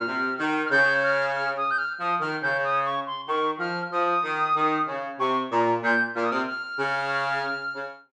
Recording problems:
none

